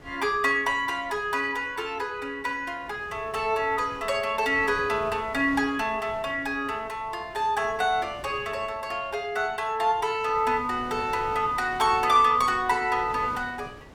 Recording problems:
wind on the microphone; below 930 Hz, SNR 20 dB

